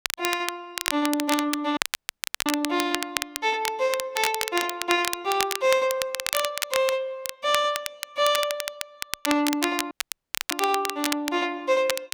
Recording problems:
crackling; vinyl, SNR 4 dB
dropout; at 2 s for 0.5 s and at 10 s for 0.5 s

